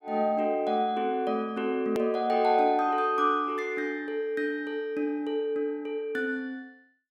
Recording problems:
hard cut with a click; at 2 s

